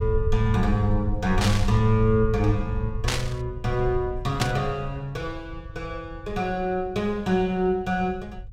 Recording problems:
low-frequency rumble; below 78 Hz, SNR 8 dB
burst of static; at 1.5 s, at 3 s and at 4.5 s; peak +3 dB vs average level

